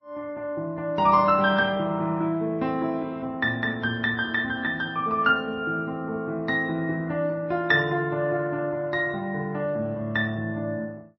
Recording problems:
lossy codec; MP3, then Vorbis, log-spectral distance 2 dB, nothing above 5.5 kHz

